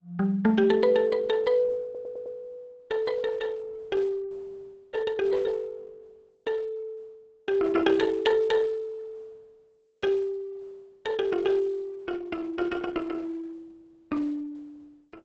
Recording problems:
codec artefacts; Opus, log-spectral distance 3 dB
stutter; at 2 s

